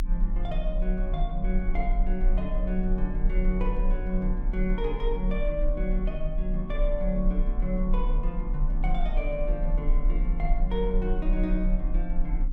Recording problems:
hum; 50 Hz, harmonics up to 300 Hz, SNR 12 dB
low-frequency rumble; below 38 Hz, strongest tone 30 Hz, SNR -2 dB

